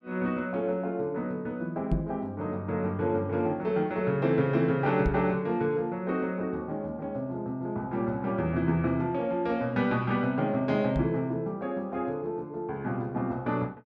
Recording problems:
microphone bump; at 2 s, at 5 s and at 11 s; peak +5 dB vs average level

